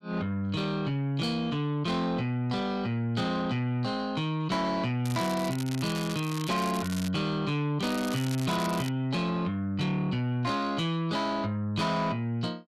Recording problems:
distortion; soft clipping, signal-to-distortion ratio 11 dB
crackling; from 5 to 7 s and from 8 to 9 s; loose cable, SNR 11 dB

